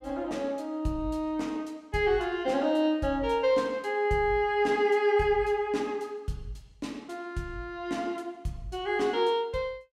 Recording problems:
none

